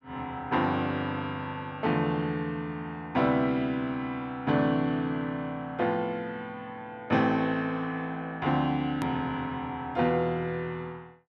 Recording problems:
hard cut with a click; at 9 s

